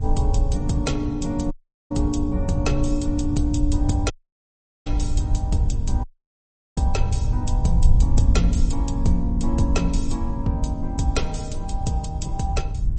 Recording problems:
lossy codec; MP3, log-spectral distance 2 dB, nothing above 8.2 kHz
electrical hum; 50 Hz, harmonics up to 1.1 kHz, SNR 16 dB
rumble; below 76 Hz, SNR -1 dB
dropout; at 1.5 s, at 4 s for 1 s and at 6 s for 0.5 s

